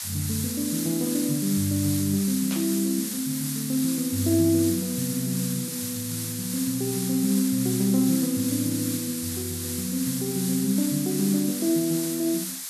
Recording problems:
hiss; slope +4 dB per octave, SNR 5 dB
static burst; at 2.5 s; peak -5 dB vs average level

